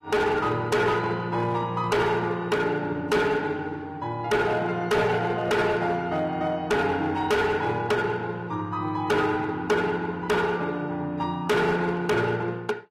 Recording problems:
lossy codec; AAC, log-spectral distance 2 dB, nothing above 14.1 kHz
distortion; hard clipping, signal-to-distortion ratio 6 dB

